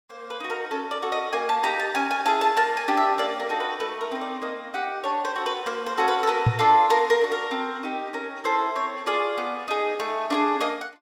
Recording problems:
microphone thump; at 6.5 s; peak +7 dB vs average level

